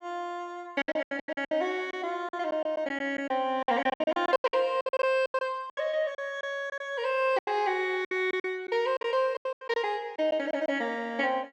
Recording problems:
lost packets; 15% of the sound replaced, filled with silence

